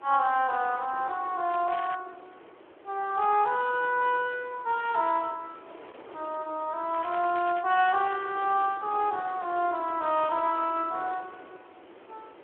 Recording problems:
phone line; 280 Hz to 3.3 kHz, Speex
wind noise; below 1 kHz, SNR 20 dB
crackle; at 1.5 s and at 7 s; loose cable, SNR 17 dB

